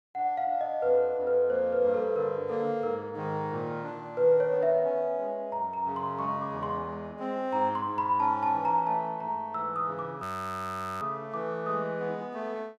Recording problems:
frozen audio; at 10 s for 1 s

